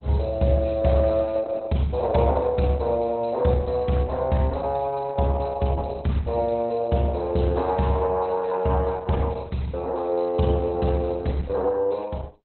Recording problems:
lossy compression; Opus, log-spectral distance 6 dB, nothing above 4.1 kHz

